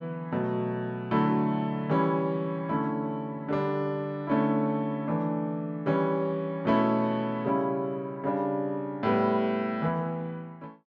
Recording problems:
none

